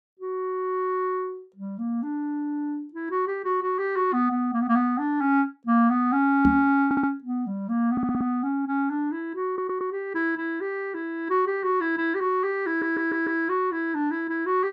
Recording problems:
microphone bump; at 6.5 s; peak +5 dB vs average level
stutter; 4 times, first at 7 s

